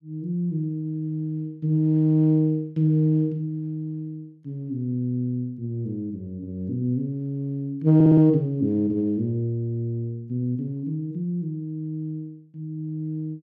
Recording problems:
stutter; at 8 s

